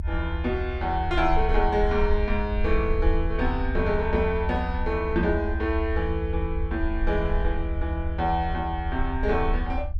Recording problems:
rumble; below 76 Hz, SNR 3 dB

